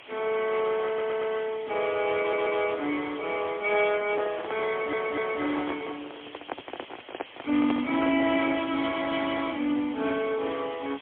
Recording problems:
telephone audio; 220 Hz to 3.4 kHz, AMR-NB, then MP3
background hiss; SNR 18 dB
stutter; at 1 s, at 2 s and at 4.5 s
microphone handling noise; from 4 to 8 s; peak -4 dB vs average level

